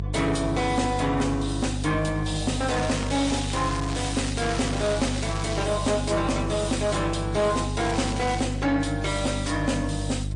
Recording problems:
lossy codec; MP3, then MP3, log-spectral distance 6 dB, nothing above 8.7 kHz
distorted audio; soft clipping, signal-to-distortion ratio 10 dB
hum; 50 Hz, harmonics up to 500 Hz, SNR 5 dB
crackle; from 2.5 to 5.5 s and at 8 s; loose cable, SNR 10 dB

